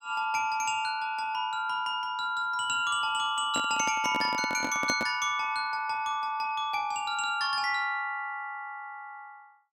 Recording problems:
handling noise; from 3.5 to 5 s; peak 0 dB vs average level

